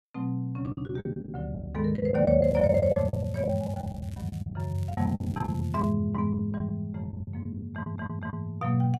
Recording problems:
packet loss; 15% of the sound replaced, filled with the last packet
crackle; from 2.5 to 4.5 s and from 4.5 to 6 s; loose cable, SNR 27 dB
audio stuttering; at 7.5 s

